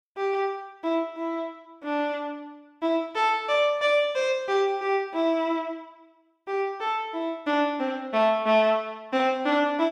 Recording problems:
none

